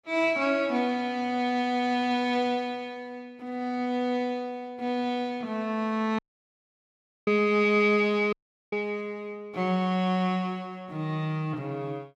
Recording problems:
audio cutting out; at 6 s for 1 s and at 8.5 s

